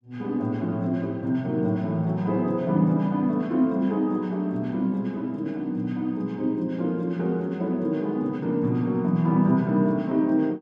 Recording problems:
none

